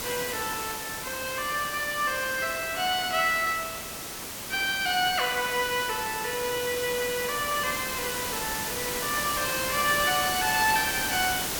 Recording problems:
background hiss; slope -2 dB per octave, SNR 4 dB

